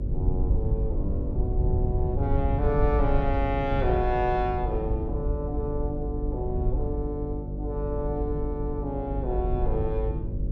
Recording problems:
hum; 50 Hz, harmonics up to 600 Hz, SNR 3 dB
rumble; below 96 Hz, SNR 0 dB

